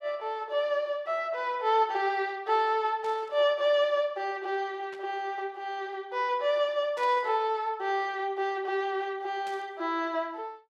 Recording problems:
static burst; 4 times, first at 3 s; peak -14 dB vs average level

